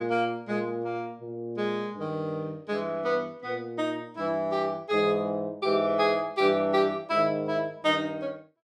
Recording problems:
none

